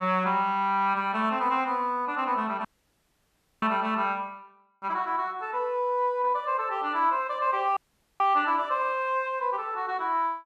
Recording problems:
dropout; at 2.5 s for 1 s and at 8 s

